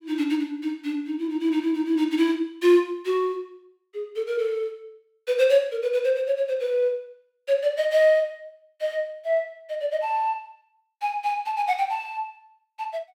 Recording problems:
none

